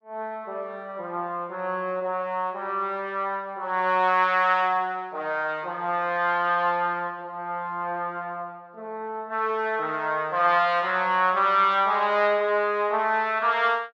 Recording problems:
none

